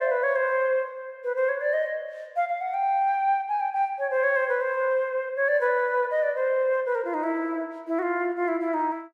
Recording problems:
none

